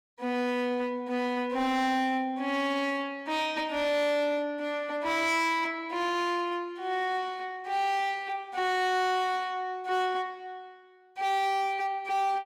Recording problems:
distorted audio; hard clipping, signal-to-distortion ratio 11 dB

